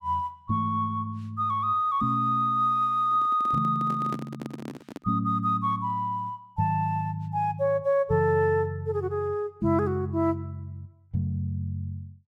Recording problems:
handling noise; from 3 to 5 s; peak -5 dB vs average level

